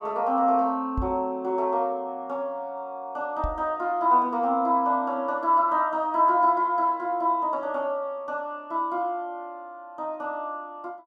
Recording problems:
microphone thump; at 1 s and at 3.5 s; peak -1 dB vs average level

